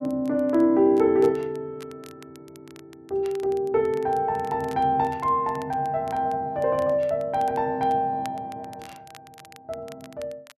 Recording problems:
crackling; vinyl, SNR 27 dB

